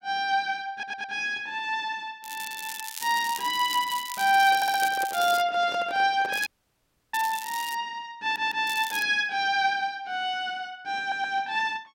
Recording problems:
audio stuttering; 4 times, first at 0.5 s
crackle; from 2 to 5.5 s, from 6.5 to 7.5 s and at 8.5 s; loose cable, SNR 11 dB
handling noise; from 4.5 to 6.5 s; peak -8 dB vs average level
dropout; at 6.5 s for 0.5 s

